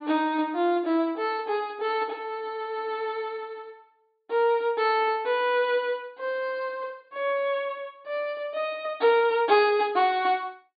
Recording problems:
treble missing; nothing above 4.8 kHz

